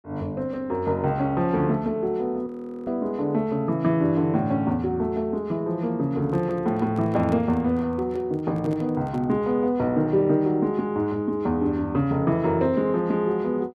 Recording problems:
frozen audio; at 2.5 s
handling noise; from 6 to 9.5 s; peak -8 dB vs average level

